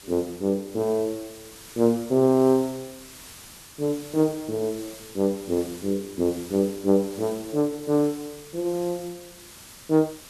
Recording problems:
hiss; slope 0 dB per octave, SNR 18 dB

